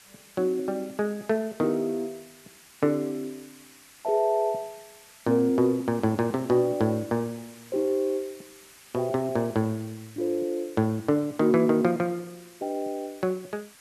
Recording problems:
hiss; slope +1 dB per octave, SNR 23 dB

